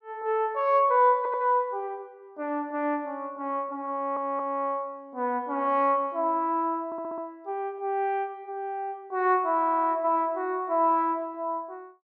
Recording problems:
audio stuttering; 4 times, first at 1 s

